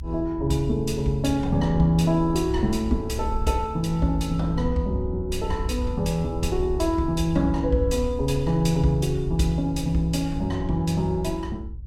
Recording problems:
low-frequency rumble; below 76 Hz, SNR 8 dB

